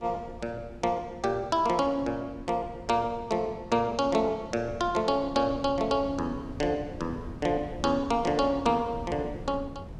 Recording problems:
wind on the microphone; below 230 Hz, SNR 15 dB

